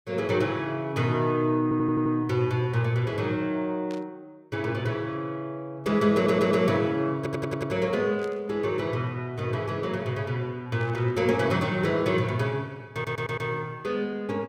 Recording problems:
audio stuttering; 4 times, first at 1.5 s
static burst; at 4 s, at 8 s and at 11 s; peak -14 dB vs average level

